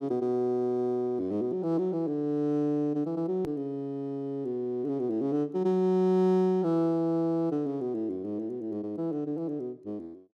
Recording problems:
edit click; at 3.5 s

